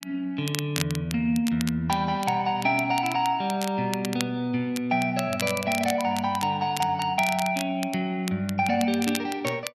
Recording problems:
crackling; vinyl, SNR 11 dB

